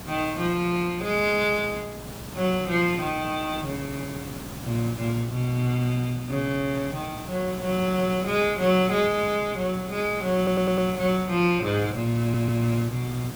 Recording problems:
hum; 60 Hz, harmonics up to 720 Hz, SNR 20 dB
background hiss; slope -4 dB per octave, SNR 13 dB
stutter; at 10 s and at 12 s

